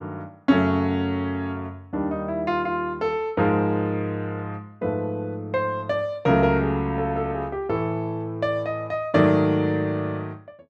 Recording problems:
none

